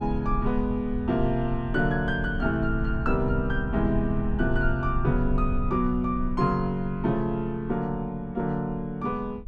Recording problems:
rumble; below 62 Hz, strongest tone 22 Hz, SNR 7 dB

